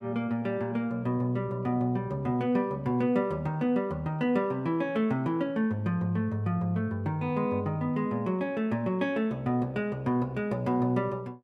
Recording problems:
none

